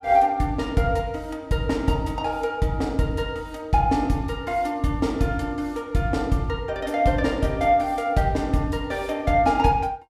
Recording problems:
none

